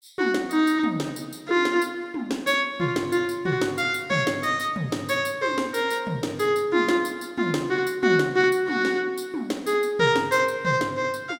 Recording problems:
none

